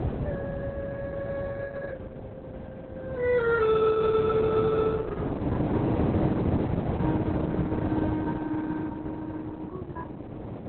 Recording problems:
codec artefacts; Opus, log-spectral distance 3 dB, nothing above 3.6 kHz
wind noise; below 420 Hz, SNR 0 dB

